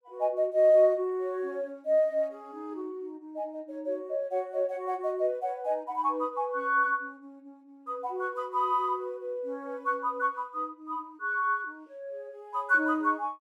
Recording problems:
none

